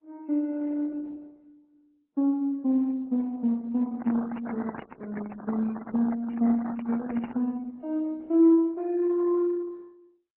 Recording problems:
lossy compression; MP3, then Opus, log-spectral distance 2 dB
microphone handling noise; from 4 to 7.5 s; peak -6 dB vs average level

